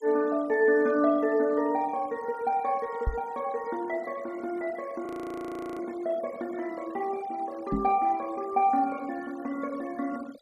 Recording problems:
denoising artefacts; signal-to-artefact ratio 22 dB
knock on the microphone; at 3 s and at 7.5 s; peak +3 dB vs average level
frozen audio; at 5 s for 0.5 s

